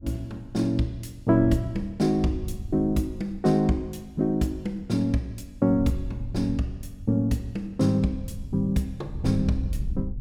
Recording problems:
wind noise; below 90 Hz, SNR 12 dB

